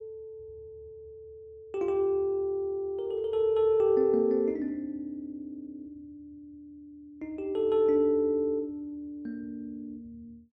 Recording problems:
none

